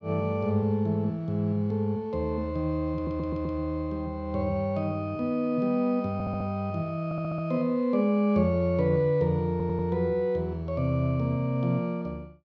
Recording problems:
stutter; 4 times, first at 3 s

